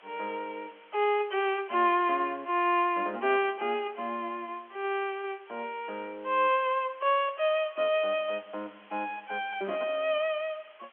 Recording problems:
phone line; 260 Hz to 3.3 kHz, G.711
background hiss; SNR 27 dB

